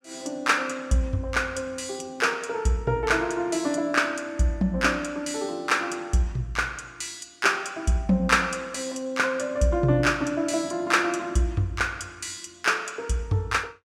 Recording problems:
none

